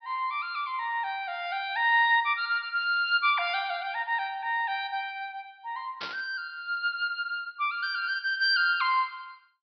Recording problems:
treble cut off; nothing above 5.5 kHz
static burst; at 6 s; peak -5 dB vs average level

